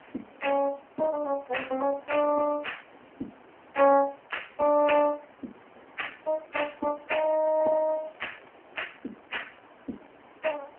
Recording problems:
phone line; 220 Hz to 3.1 kHz, AMR-NB
background hiss; SNR 25 dB

